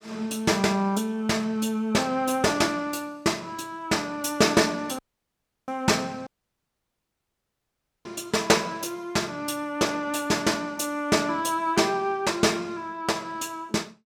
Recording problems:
audio cutting out; at 5 s for 0.5 s and at 6.5 s for 2 s

